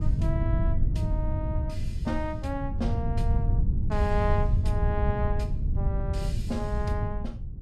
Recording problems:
wind on the microphone; below 110 Hz, SNR -5 dB

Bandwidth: 14 kHz